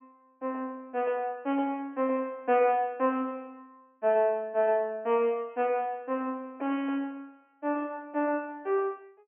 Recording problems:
treble missing; nothing above 3.1 kHz

